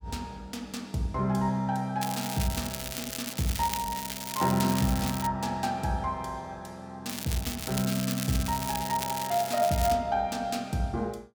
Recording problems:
crackle; from 2 to 5.5 s and from 7 to 10 s; loose cable, SNR 6 dB

